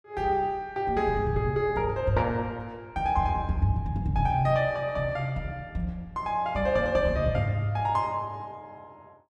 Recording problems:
none

